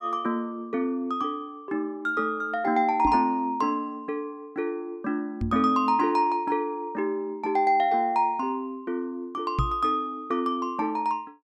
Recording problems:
knock on the microphone; at 3 s, at 5.5 s and at 9.5 s; peak +4 dB vs average level

